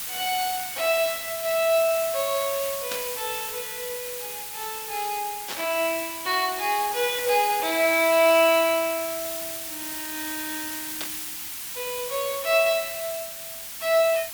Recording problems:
background hiss; SNR 7 dB
static burst; at 3 s, at 5.5 s and at 11 s; peak -4 dB vs average level

